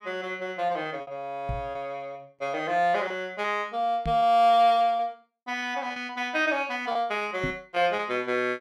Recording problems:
packet loss; 7% of the sound replaced, filled with repeated pitch periods
microphone bump; at 1.5 s, at 4 s and at 7.5 s; peak -2 dB vs average level

